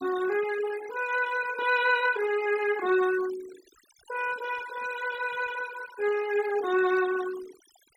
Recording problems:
noise reduction artefacts; signal-to-artefact ratio 14 dB

